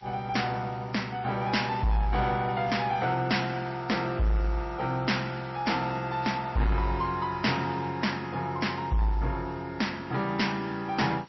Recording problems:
codec artefacts; MP3, log-spectral distance 4 dB, nothing above 5.7 kHz
distortion; soft clipping, signal-to-distortion ratio 11 dB
hiss; SNR 28 dB

